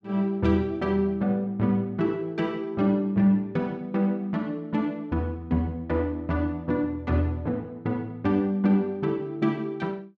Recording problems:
none

